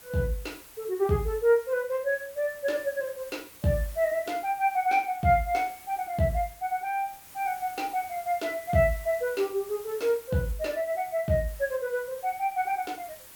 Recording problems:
background hiss; slope -1 dB per octave, SNR 19 dB

